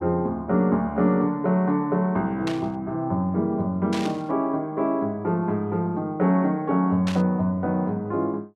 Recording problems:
burst of static; at 2.5 s, at 4 s and at 7 s; peak -5 dB vs average level

